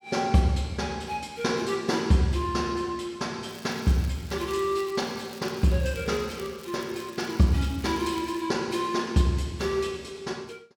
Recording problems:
crackling; from 3.5 to 8.5 s; loose cable, SNR 21 dB

